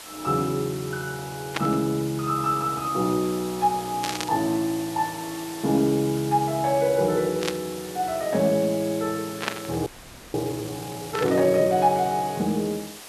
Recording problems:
hiss; slope -1 dB per octave, SNR 14 dB
burst of static; 5 times, first at 1.5 s; peak +3 dB vs average level
frozen audio; at 10 s

